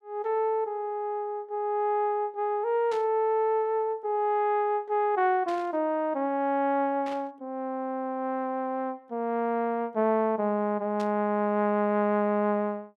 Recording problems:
static burst; 4 times, first at 3 s; peak -12 dB vs average level

